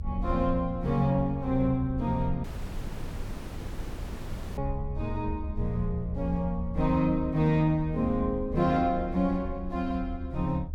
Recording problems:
rumble; below 76 Hz, SNR 9 dB
audio cutting out; at 2.5 s for 2 s

